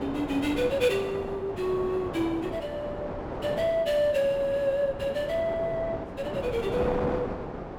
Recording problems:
wind on the microphone; below 790 Hz, SNR 7 dB

